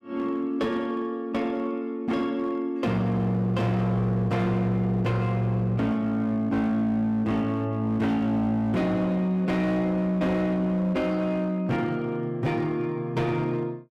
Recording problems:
distorted audio; hard clipping, signal-to-distortion ratio 11 dB

